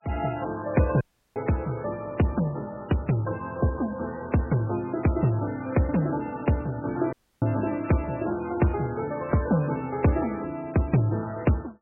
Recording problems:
lossy codec; MP3, log-spectral distance 3 dB, nothing above 2.7 kHz
dropout; at 1 s and at 7 s

